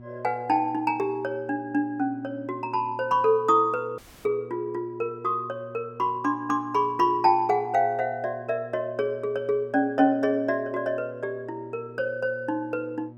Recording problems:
electrical hum; 60 Hz, harmonics up to 960 Hz, SNR 20 dB
dropout; at 4 s

